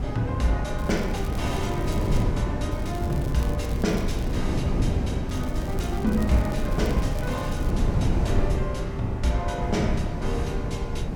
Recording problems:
wind noise; below 190 Hz, SNR -2 dB
crackle; from 1 to 2 s, from 2.5 to 4.5 s and from 5.5 to 7.5 s; loose cable, SNR 17 dB

